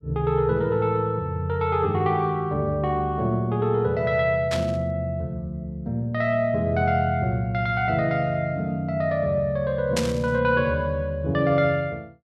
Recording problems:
static burst; at 4.5 s and at 10 s; peak +1 dB vs average level

